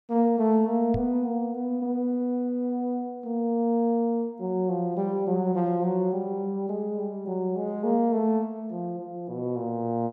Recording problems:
microphone thump; at 1 s; peak 0 dB vs average level

